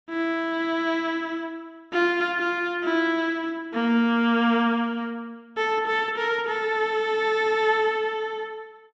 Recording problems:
none

